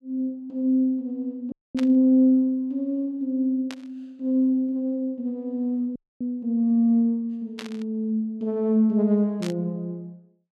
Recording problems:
audio cutting out; at 1.5 s and at 6 s
static burst; 4 times, first at 2 s; peak -8 dB vs average level

